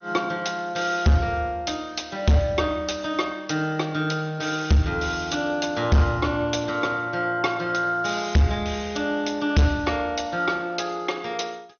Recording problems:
codec artefacts; MP2, log-spectral distance 6 dB, nothing above 6.3 kHz
distortion; hard clipping, signal-to-distortion ratio 7 dB

